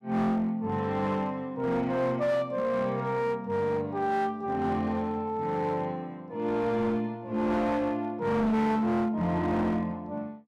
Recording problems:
distortion; hard clipping, uneven, signal-to-distortion ratio 12 dB

